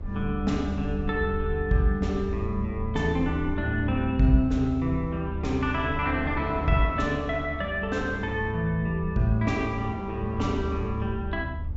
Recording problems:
treble cut off; nothing above 8 kHz
hum; 50 Hz, harmonics up to 300 Hz, SNR 19 dB
low-frequency rumble; below 78 Hz, strongest tone 76 Hz, SNR 8 dB
wind on the microphone; below 660 Hz, SNR 17 dB

